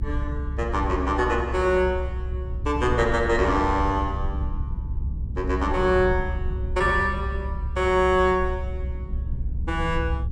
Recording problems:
rumble; below 74 Hz, strongest tone 64 Hz, SNR 6 dB

